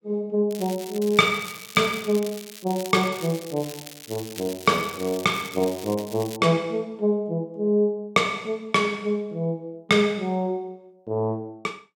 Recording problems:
crackling; from 0.5 to 6.5 s; loose cable, SNR 15 dB

